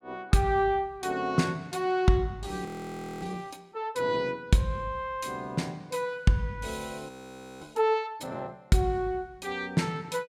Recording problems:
frozen audio; at 2.5 s for 0.5 s and at 7 s for 0.5 s

